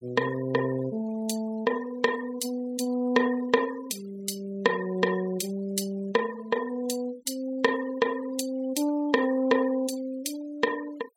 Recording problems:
noise reduction artefacts; signal-to-artefact ratio 19 dB

